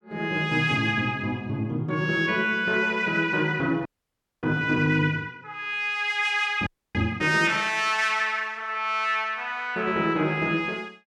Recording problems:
audio freezing; at 4 s for 0.5 s and at 6.5 s

